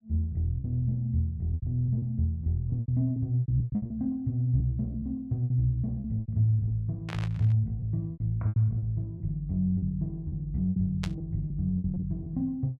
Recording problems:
packet loss; 11% of the sound replaced, filled with repeated pitch periods
burst of static; at 7 s and at 11 s; peak -4 dB vs average level

